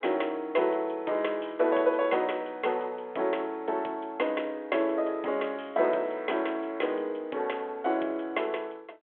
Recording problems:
phone line; 300 Hz to 3.4 kHz, G.726

